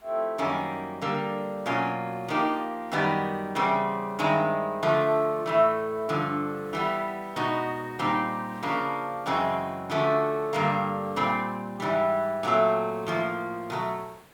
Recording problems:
background hiss; SNR 27 dB

